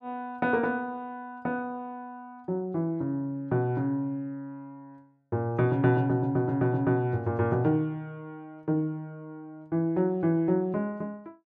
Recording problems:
none

